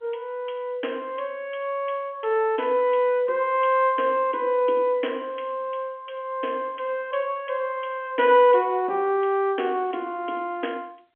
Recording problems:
telephone audio; 280 Hz to 3.4 kHz, G.711

